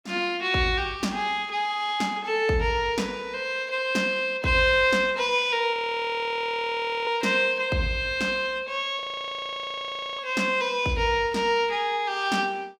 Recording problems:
audio freezing; at 5.5 s for 1.5 s and at 9 s for 1 s

